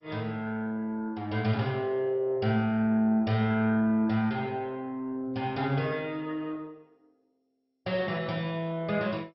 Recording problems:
lossy compression; MP2, log-spectral distance 2 dB, nothing above 5.5 kHz

